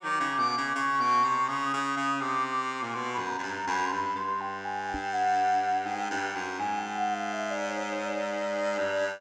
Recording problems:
microphone bump; at 5 s; peak -4 dB vs average level

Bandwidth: 17 kHz